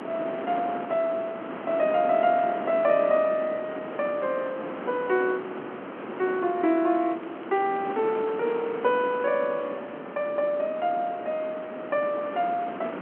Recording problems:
telephone audio; 220 Hz to 3.3 kHz, G.711
wind on the microphone; below 1.2 kHz, SNR 10 dB
crackling; from 7 to 9.5 s; loose cable, SNR 30 dB

